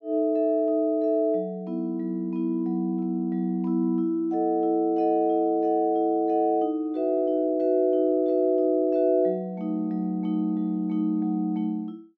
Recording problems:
none

